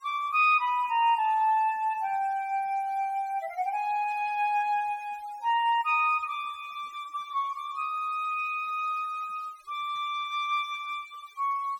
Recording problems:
denoising artefacts; signal-to-artefact ratio 25 dB

